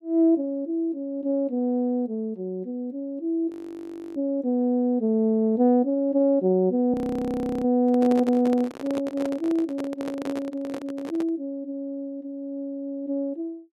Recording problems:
frozen audio; at 3.5 s for 0.5 s and at 7 s for 0.5 s
handling noise; from 8 to 11 s; peak -4 dB vs average level

